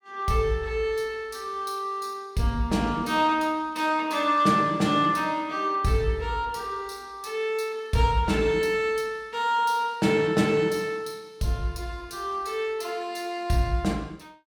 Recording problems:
none

